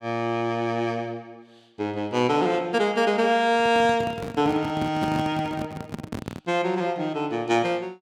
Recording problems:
microphone handling noise; from 3.5 to 6.5 s; peak -1 dB vs average level

